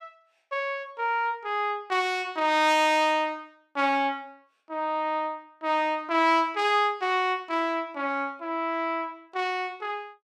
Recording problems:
none

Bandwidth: 15.5 kHz